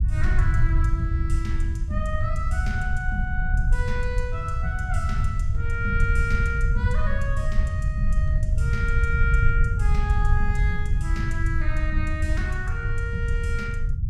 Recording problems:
rumble; below 84 Hz, SNR -5 dB

